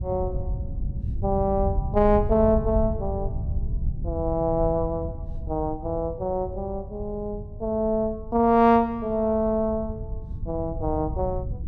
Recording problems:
low-frequency rumble; below 100 Hz, SNR 8 dB

